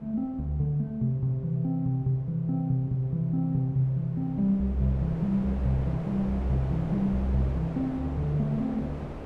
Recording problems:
wind on the microphone; below 570 Hz, SNR 11 dB

